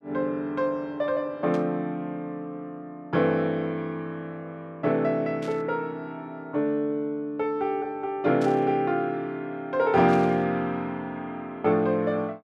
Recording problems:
burst of static; 4 times, first at 1.5 s; peak -13 dB vs average level

